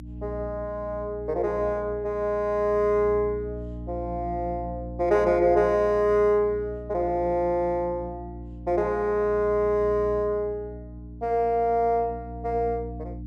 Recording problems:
electrical hum; 60 Hz, harmonics up to 300 Hz, SNR 14 dB

